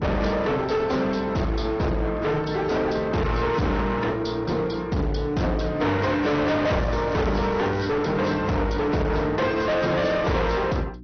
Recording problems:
treble cut off; nothing above 6 kHz
lossy codec; AAC, log-spectral distance 3 dB
distortion; hard clipping, uneven, signal-to-distortion ratio 5 dB
hum; 60 Hz, harmonics up to 360 Hz, SNR 18 dB
crackling; from 6.5 to 8 s; loose cable, SNR 23 dB

